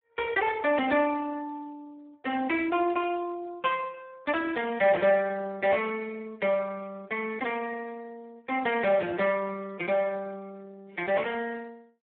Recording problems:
phone line; 260 Hz to 2.8 kHz, Speex

